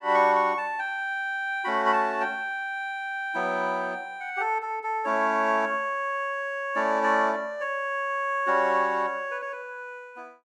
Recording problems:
none

